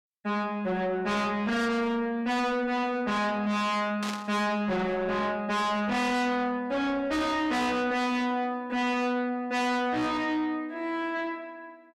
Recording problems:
distorted audio; soft clipping, signal-to-distortion ratio 6 dB
burst of static; at 4 s; peak -3 dB vs average level

